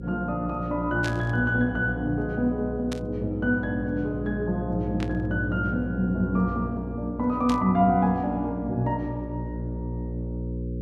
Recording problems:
hum; 60 Hz, harmonics up to 540 Hz, SNR 8 dB
static burst; 4 times, first at 1 s; peak -5 dB vs average level

